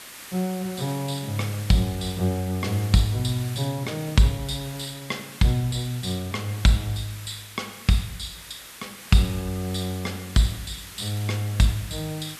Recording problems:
hiss; slope 0 dB per octave, SNR 14 dB

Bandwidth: 14 kHz